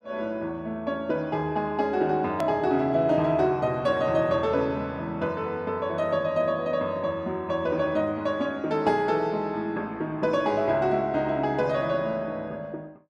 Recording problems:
edit click; at 2.5 s

